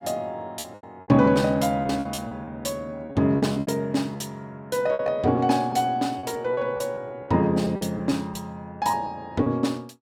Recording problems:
packet loss; 11% of the sound replaced, filled with repeated pitch periods

